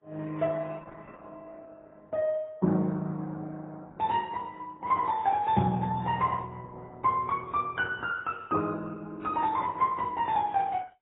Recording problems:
codec artefacts; Opus, then AAC, log-spectral distance 3 dB, nothing above 3.6 kHz

